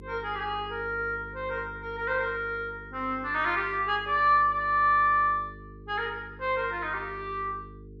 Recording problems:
electrical hum; 50 Hz, harmonics up to 450 Hz, SNR 19 dB

